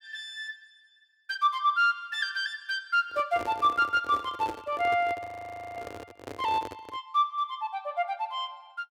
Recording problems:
handling noise; from 3 to 7 s; peak -5 dB vs average level
audio freezing; at 5.5 s for 0.5 s

